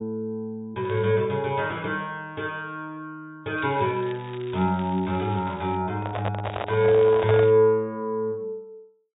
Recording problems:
low-pass filter; nothing above 4 kHz
crackle; at 1 s, from 3.5 to 6 s and from 6.5 to 7.5 s; loose cable, SNR 23 dB
microphone handling noise; from 6 to 7.5 s; peak 0 dB vs average level

